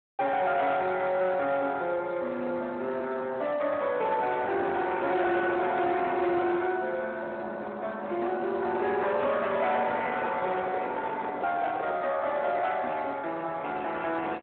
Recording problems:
phone line; 260 Hz to 3.6 kHz, Speex
distorted audio; soft clipping, signal-to-distortion ratio 10 dB
microphone handling noise; from 9.5 to 12 s; peak -2 dB vs average level

